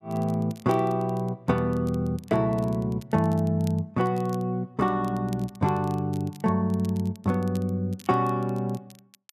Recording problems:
crackle; vinyl, SNR 26 dB

